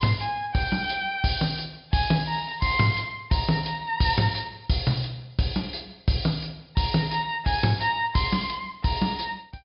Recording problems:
treble missing; nothing above 5.5 kHz

